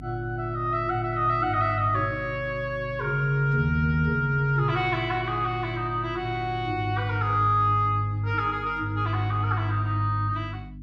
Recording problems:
hum; 50 Hz, harmonics up to 300 Hz, SNR 16 dB

